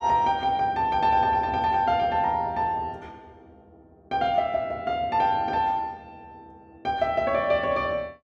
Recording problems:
none

